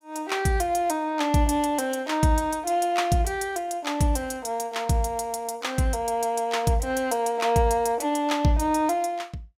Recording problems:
none

